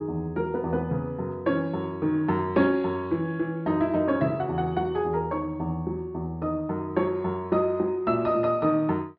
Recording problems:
low-pass filter; nothing above 5.5 kHz

